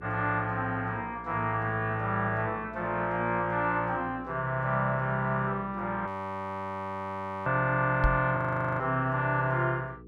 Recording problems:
hum; 60 Hz, harmonics up to 480 Hz, SNR 19 dB
frozen audio; at 6 s for 1.5 s and at 8.5 s
microphone bump; at 8 s; peak +5 dB vs average level

